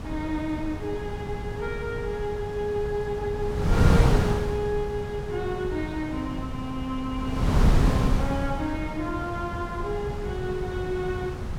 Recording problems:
wind on the microphone; below 210 Hz, SNR -2 dB

